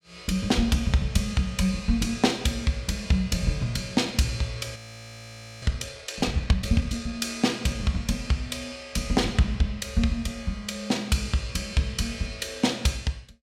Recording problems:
audio freezing; at 5 s for 1 s

